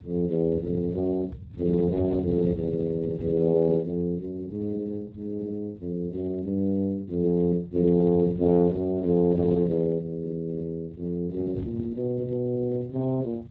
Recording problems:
codec artefacts; Speex, log-spectral distance 2 dB
rumble; below 160 Hz, SNR 16 dB

